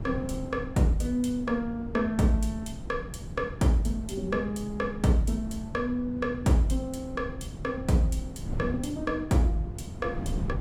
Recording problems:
wind noise; below 200 Hz, SNR 10 dB

